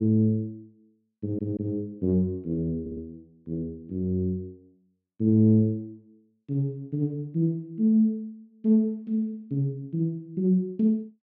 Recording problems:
audio stuttering; at 1 s and at 3 s

